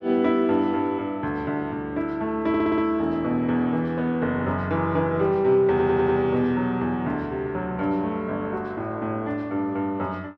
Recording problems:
stutter; at 2.5 s and at 5.5 s

